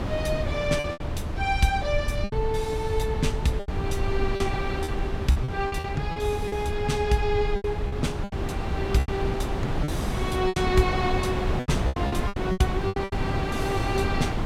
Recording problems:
rumble; below 84 Hz, SNR 6 dB
wind on the microphone; below 530 Hz, SNR 3 dB
lost packets; 11% of the sound replaced, filled with repeated pitch periods

